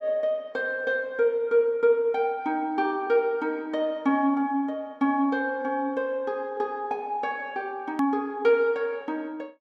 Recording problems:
edit click; at 8 s

